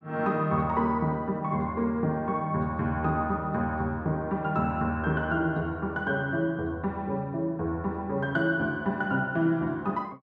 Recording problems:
none

